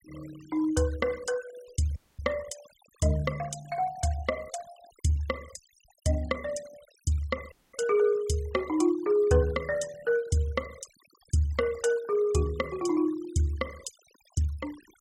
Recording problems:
noise reduction artefacts; signal-to-artefact ratio 21 dB
audio cutting out; at 2 s and at 7.5 s

